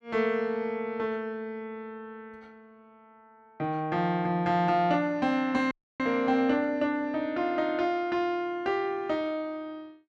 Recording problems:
audio cutting out; at 5.5 s

